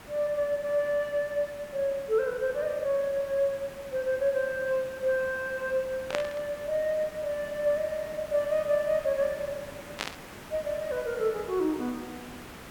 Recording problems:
background hiss; slope -4 dB per octave, SNR 16 dB
burst of static; at 6 s and at 10 s; peak +2 dB vs average level

